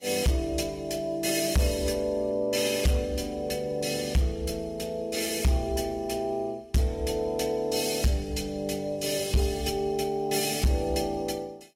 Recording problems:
lossy codec; AAC, log-spectral distance 3 dB, nothing above 15.1 kHz
distortion; hard clipping, signal-to-distortion ratio 10 dB

